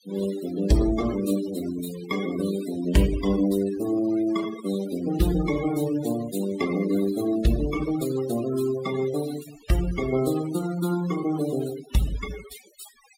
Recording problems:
noise reduction artefacts; signal-to-artefact ratio 13 dB

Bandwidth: 16 kHz